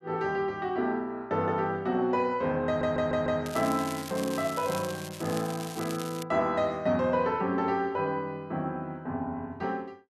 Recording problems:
audio stuttering; at 2.5 s
crackling; from 3.5 to 6 s; loose cable, SNR 12 dB

